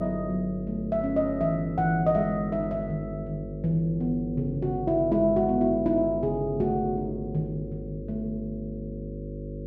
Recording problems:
mains hum; 50 Hz, harmonics up to 550 Hz, SNR 9 dB

